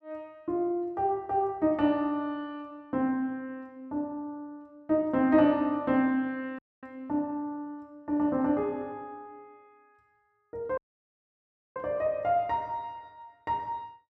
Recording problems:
dropout; at 6.5 s and at 11 s for 1 s

